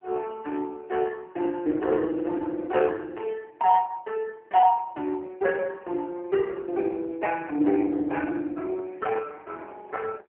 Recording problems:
phone line; 240 Hz to 3 kHz, AMR-NB

